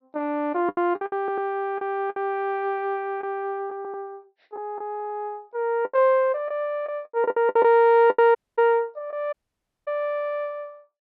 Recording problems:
treble missing; nothing above 5.8 kHz
packet loss; 8% of the sound replaced, filled with the last packet
audio stuttering; at 1 s, at 4 s and at 5 s
dropout; at 8.5 s and at 9.5 s for 0.5 s

